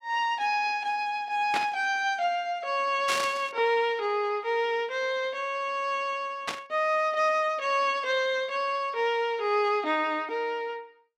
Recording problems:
static burst; at 1.5 s, at 3 s and at 6.5 s; peak +1 dB vs average level

